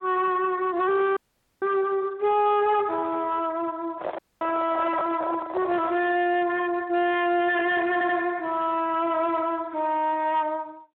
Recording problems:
phone line; 370 Hz to 2 kHz, Speex
distorted audio; soft clipping, signal-to-distortion ratio 6 dB
audio cutting out; at 1 s and at 4 s
microphone handling noise; from 4 to 6 s; peak 0 dB vs average level
stutter; at 8 s

